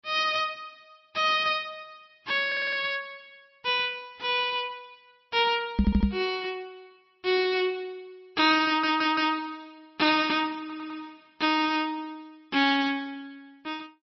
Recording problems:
lossy compression; MP3, log-spectral distance 2 dB, nothing above 5.7 kHz
stutter; 4 times, first at 2.5 s
microphone thump; at 6 s; peak +6 dB vs average level

